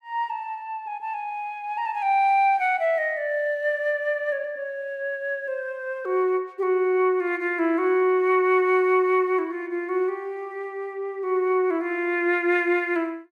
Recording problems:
none

